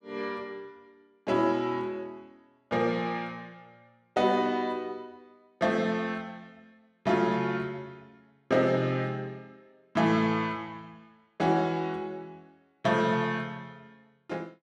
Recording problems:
none

